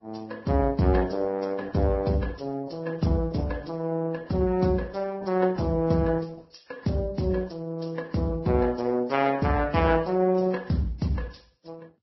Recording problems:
low-pass filter; nothing above 5.6 kHz
lossy compression; Opus, then Vorbis, log-spectral distance 3 dB

